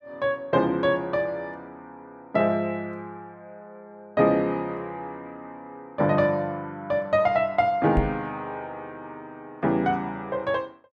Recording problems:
microphone thump; at 8 s; peak +4 dB vs average level

